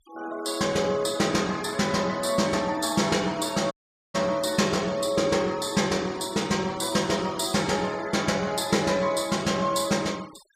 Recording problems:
denoising artefacts; signal-to-artefact ratio 21 dB
audio cutting out; at 3.5 s

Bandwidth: 15 kHz